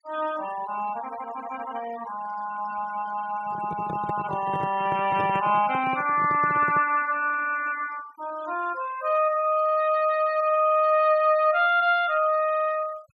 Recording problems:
denoising artefacts; signal-to-artefact ratio 20 dB
handling noise; from 3.5 to 7 s; peak -6 dB vs average level

